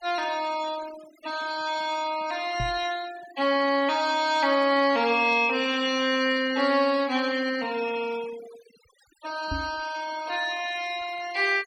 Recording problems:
noise reduction artefacts; signal-to-artefact ratio 18 dB
knock on the microphone; at 2.5 s and at 9.5 s; peak -4 dB vs average level

